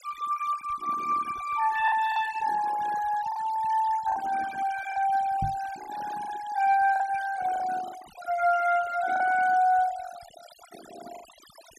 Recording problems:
denoising artefacts; signal-to-artefact ratio 16 dB
packet loss; 5% of the sound replaced, filled with the last packet
microphone bump; at 5.5 s; peak -3 dB vs average level

